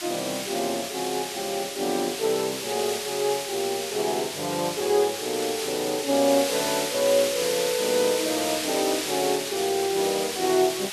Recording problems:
background hiss; slope +3 dB per octave, SNR 4 dB
crackling; from 2.5 to 4.5 s; loose cable, SNR 29 dB

